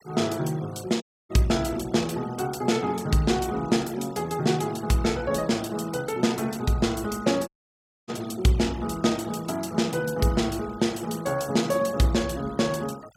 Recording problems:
noise reduction artefacts; signal-to-artefact ratio 21 dB
dropout; at 1 s and at 7.5 s for 0.5 s

